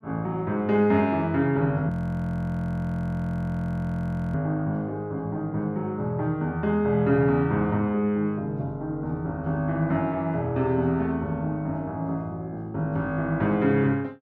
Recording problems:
audio freezing; at 2 s for 2.5 s

